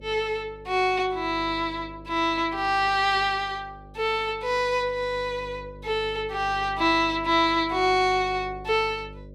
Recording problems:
electrical hum; 50 Hz, harmonics up to 600 Hz, SNR 20 dB

